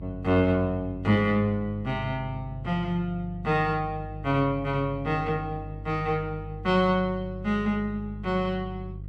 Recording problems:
electrical hum; 50 Hz, harmonics up to 350 Hz, SNR 12 dB

